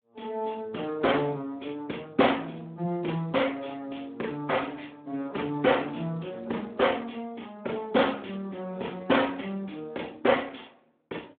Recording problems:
phone line; 220 Hz to 3.5 kHz, Speex

